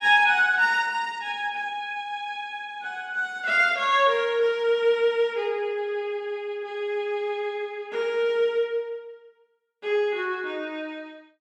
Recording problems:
none

